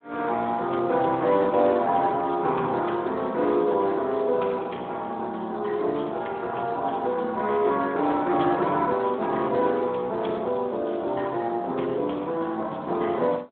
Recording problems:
phone line; 260 Hz to 3.9 kHz, Speex

